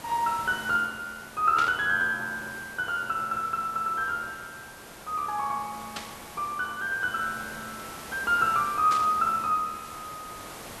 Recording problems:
hiss; slope -4 dB per octave, SNR 16 dB
burst of static; at 1.5 s, at 6 s and at 9 s; peak -3 dB vs average level

